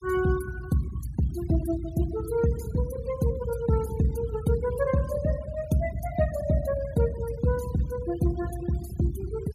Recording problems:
noise reduction artefacts; signal-to-artefact ratio 17 dB

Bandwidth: 15.5 kHz